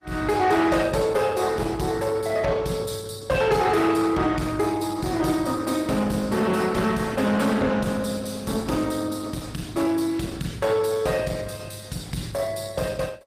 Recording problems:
lossy compression; Opus, log-spectral distance 5 dB, nothing above 15.1 kHz
distorted audio; soft clipping, signal-to-distortion ratio 11 dB

